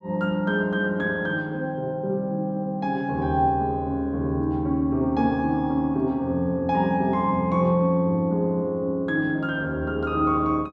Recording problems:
none

